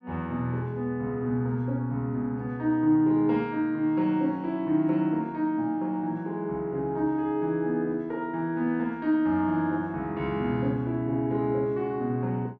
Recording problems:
none

